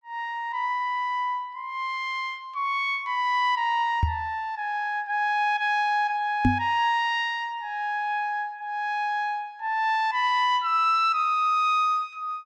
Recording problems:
microphone bump; at 4 s and at 6.5 s; peak +7 dB vs average level

